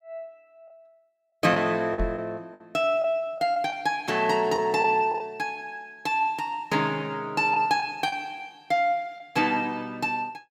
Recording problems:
lost packets; 4% of the sound replaced, filled with the last packet
knock on the microphone; at 2 s; peak -1 dB vs average level

